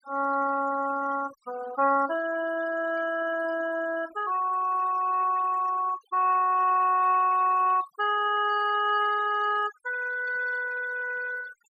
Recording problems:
denoising artefacts; signal-to-artefact ratio 19 dB

